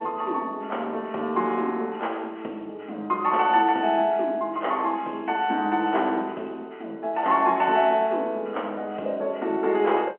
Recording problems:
phone line; 240 Hz to 3.2 kHz, G.711

